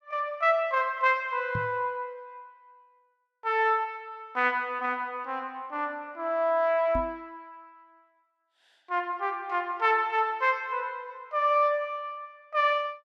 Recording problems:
knock on the microphone; at 1.5 s and at 7 s; peak -3 dB vs average level

